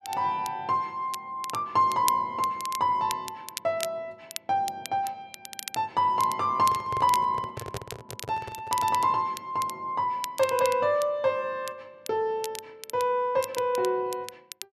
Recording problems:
crackle; vinyl, SNR 13 dB
handling noise; from 6.5 to 9 s; peak -4 dB vs average level

